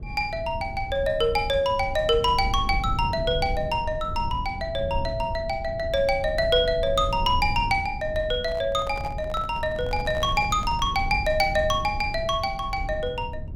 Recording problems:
rumble; below 110 Hz, SNR 10 dB
microphone handling noise; from 8.5 to 11 s; peak -10 dB vs average level

